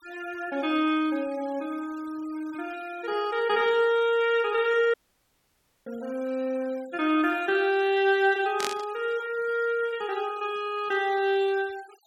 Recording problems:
denoising artefacts; signal-to-artefact ratio 23 dB
audio cutting out; at 5 s for 1 s
burst of static; at 8.5 s; peak +1 dB vs average level

